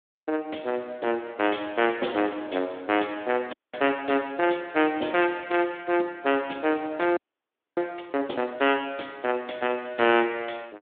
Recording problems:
telephone audio; 240 Hz to 3.6 kHz, Speex
frozen audio; at 3.5 s and at 7 s for 0.5 s

